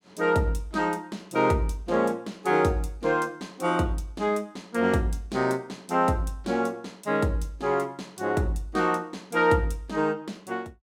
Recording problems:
none

